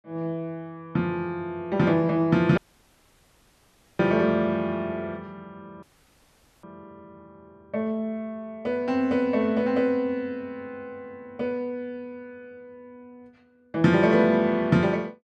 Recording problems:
audio cutting out; at 2.5 s for 1.5 s and at 6 s for 1 s

